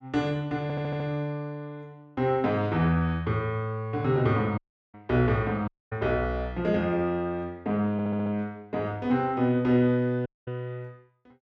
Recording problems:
audio stuttering; at 0.5 s and at 8 s
dropout; at 4.5 s, at 5.5 s and at 10 s

